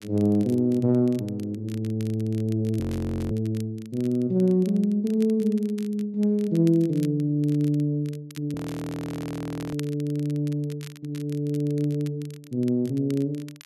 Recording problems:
crackling; vinyl, SNR 24 dB
audio freezing; at 3 s for 0.5 s and at 8.5 s for 1 s

